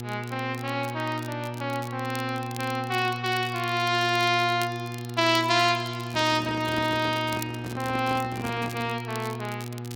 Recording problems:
electrical hum; 60 Hz, harmonics up to 1.3 kHz, SNR 9 dB
crackle; vinyl, SNR 18 dB
handling noise; from 6 to 9 s; peak -4 dB vs average level

